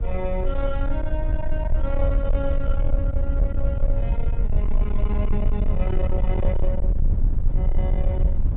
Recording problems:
treble missing; nothing above 4 kHz
distorted audio; soft clipping, signal-to-distortion ratio 11 dB
low-frequency rumble; below 58 Hz, strongest tone 22 Hz, SNR -6 dB

